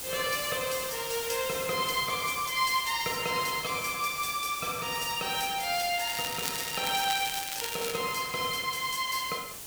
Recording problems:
hiss; SNR 8 dB
crackle; from 6 to 8 s; loose cable, SNR 6 dB

